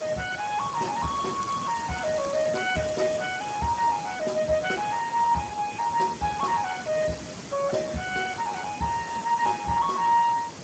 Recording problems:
codec artefacts; Speex, log-spectral distance 11 dB, nothing above 7.6 kHz
hiss; SNR 11 dB
crackle; from 1.5 to 3 s; loose cable, SNR 19 dB

